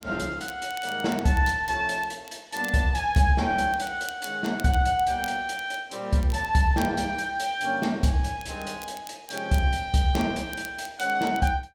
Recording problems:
crackle; vinyl, SNR 20 dB

